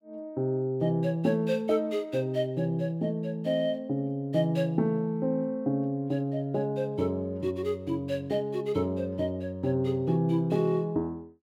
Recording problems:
none

